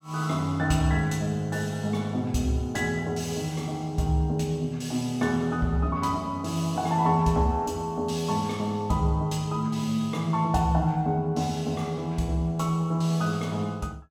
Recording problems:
none

